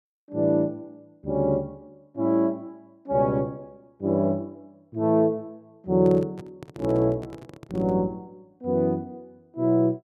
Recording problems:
handling noise; from 6 to 8 s; peak -9 dB vs average level

